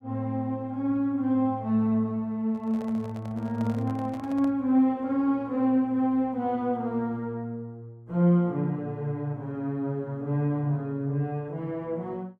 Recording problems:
handling noise; from 2.5 to 4.5 s; peak -11 dB vs average level

